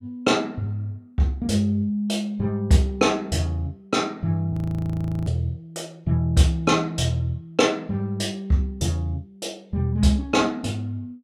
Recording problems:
audio freezing; at 4.5 s for 0.5 s

